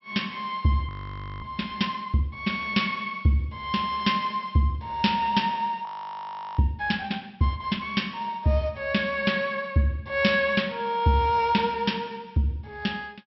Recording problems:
treble missing; nothing above 5.6 kHz
frozen audio; at 1 s for 0.5 s and at 6 s for 0.5 s

